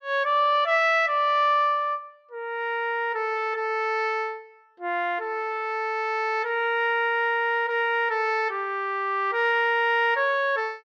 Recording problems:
none

